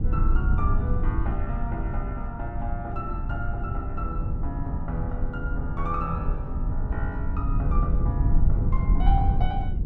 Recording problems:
rumble; below 84 Hz, SNR -6 dB

